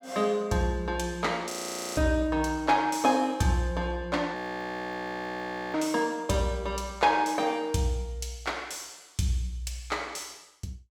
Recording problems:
frozen audio; at 1.5 s and at 4.5 s for 1.5 s

